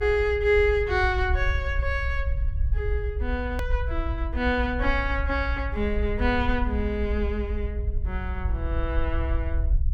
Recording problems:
low-frequency rumble; below 64 Hz, SNR 2 dB
edit click; at 3.5 s

